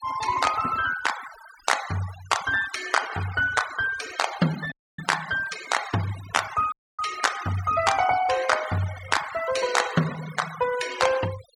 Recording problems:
denoising artefacts; signal-to-artefact ratio 12 dB
dropout; at 4.5 s and at 6.5 s

